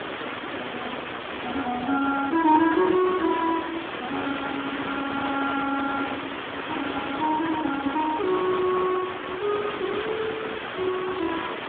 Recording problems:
phone line; 220 Hz to 2.2 kHz, Speex
hiss; SNR 6 dB
crackling; from 2.5 to 4 s; loose cable, SNR 27 dB

